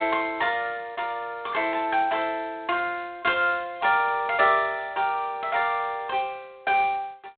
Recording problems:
phone line; 260 Hz to 3.7 kHz, G.726

